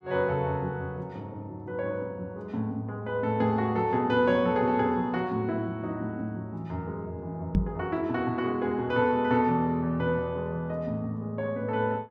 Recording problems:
knock on the microphone; at 7.5 s; peak +6 dB vs average level

